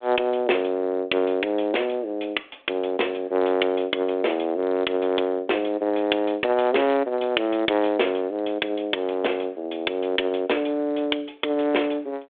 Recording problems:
telephone audio; 280 Hz to 3.6 kHz, G.726

